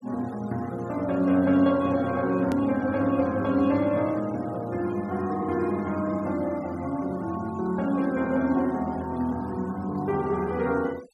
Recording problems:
noise reduction artefacts; signal-to-artefact ratio 23 dB
edit click; at 2.5 s

